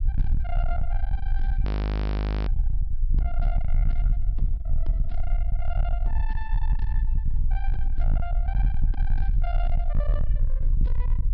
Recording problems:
low-pass filter; nothing above 5.5 kHz
distorted audio; soft clipping, signal-to-distortion ratio 7 dB
rumble; below 50 Hz, strongest tone 20 Hz, SNR -12 dB
frozen audio; at 1.5 s for 1 s

